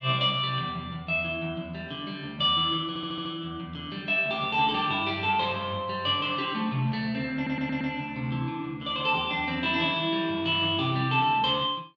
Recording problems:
stutter; at 3 s and at 7.5 s

